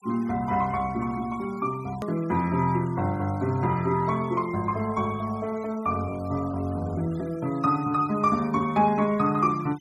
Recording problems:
noise reduction artefacts; signal-to-artefact ratio 23 dB
hard cut with a click; at 2 s

